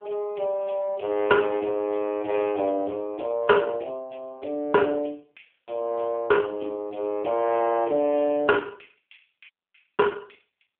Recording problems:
telephone audio; 240 Hz to 2 kHz, AMR-NB
dropout; at 9.5 s

